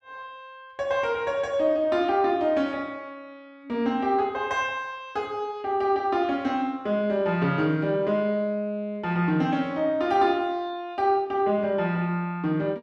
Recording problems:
none

